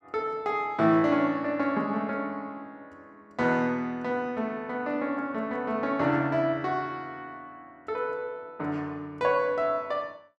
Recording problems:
none

